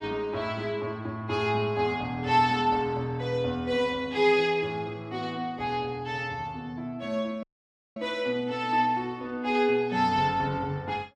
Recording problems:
dropout; at 7.5 s for 0.5 s

